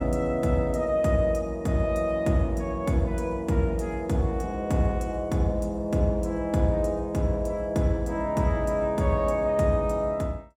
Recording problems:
none

